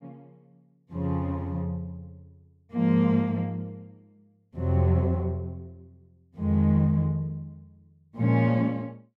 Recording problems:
none

